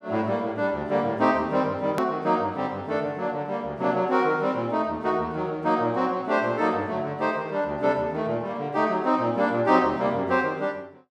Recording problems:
hard cut with a click; at 2 s

